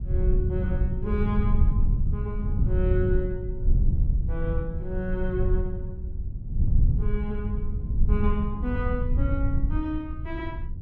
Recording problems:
low-frequency rumble; below 88 Hz, SNR -5 dB

